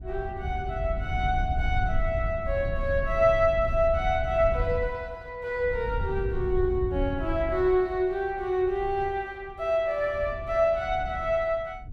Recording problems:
wind on the microphone; below 86 Hz, SNR 7 dB

